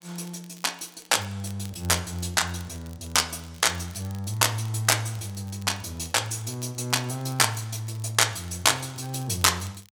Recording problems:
crackle; vinyl, SNR 25 dB

